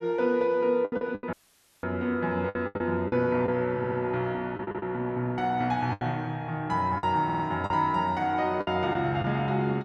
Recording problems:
packet loss; 8% of the sound replaced, filled with the last packet
audio cutting out; at 1.5 s for 0.5 s
stutter; at 4 s, at 4.5 s and at 7.5 s

